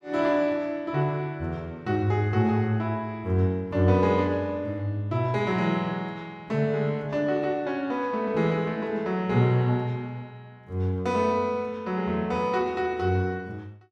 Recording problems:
none

